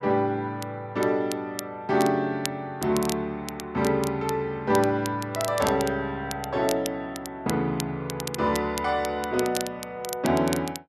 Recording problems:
crackle; vinyl, SNR 11 dB

